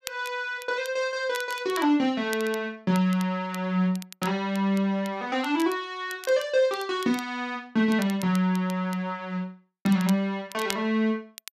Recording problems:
crackle; vinyl, SNR 17 dB

